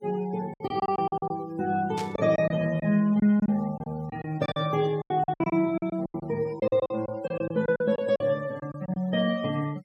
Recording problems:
noise reduction artefacts; signal-to-artefact ratio 22 dB
packet loss; 13% of the sound replaced, filled with silence
static burst; at 2 s; peak -8 dB vs average level

